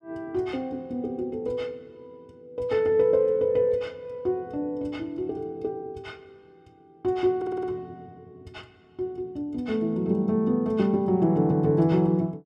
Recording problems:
stutter; at 7.5 s

